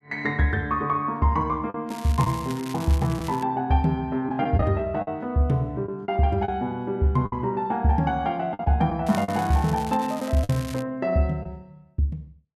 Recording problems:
packet loss; 4% of the sound replaced, filled with the last packet
crackling; from 2 to 3.5 s and from 9 to 11 s; loose cable, SNR 17 dB

